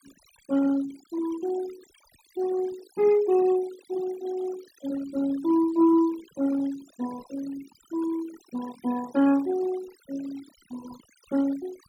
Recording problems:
noise reduction artefacts; signal-to-artefact ratio 18 dB

